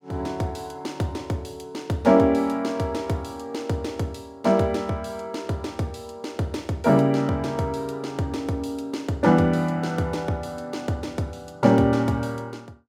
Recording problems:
none

